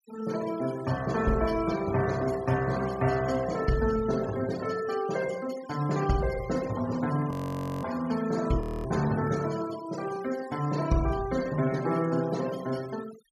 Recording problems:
denoising artefacts; signal-to-artefact ratio 15 dB
frozen audio; at 7.5 s for 0.5 s and at 8.5 s

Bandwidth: 15 kHz